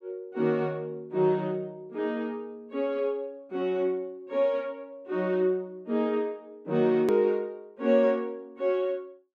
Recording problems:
edit click; at 7 s

